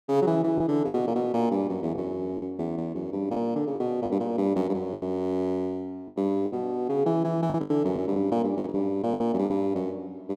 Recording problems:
lost packets; 8% of the sound replaced, filled with the last packet

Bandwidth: 14 kHz